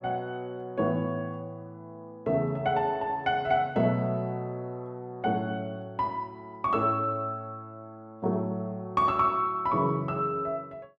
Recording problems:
none

